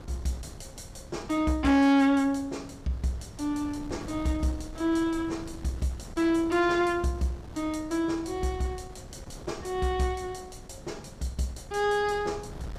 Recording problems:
distorted audio; soft clipping, signal-to-distortion ratio 12 dB
wind noise; below 340 Hz, SNR 17 dB

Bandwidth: 15 kHz